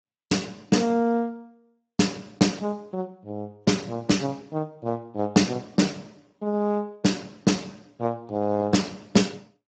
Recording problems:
lossy compression; Speex, log-spectral distance 3 dB, nothing above 7.3 kHz

